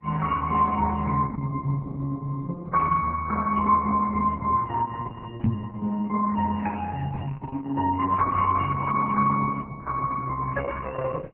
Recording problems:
lossy compression; MP3, then Opus, log-spectral distance 3 dB
microphone thump; at 5.5 s; peak +7 dB vs average level

